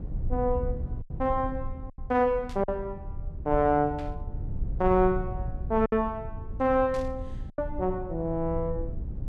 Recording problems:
rumble; below 90 Hz, SNR 9 dB
lost packets; 3% of the sound replaced, filled with silence
burst of static; at 2.5 s, at 4 s and at 7 s; peak -14 dB vs average level

